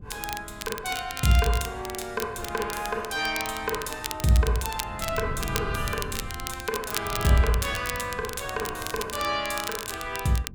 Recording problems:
wind noise; below 140 Hz, SNR 13 dB
crackling; vinyl, SNR 8 dB

